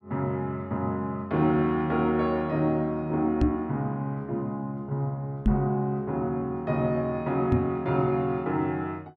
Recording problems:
microphone thump; at 3.5 s, at 5.5 s and at 7.5 s; peak +8 dB vs average level

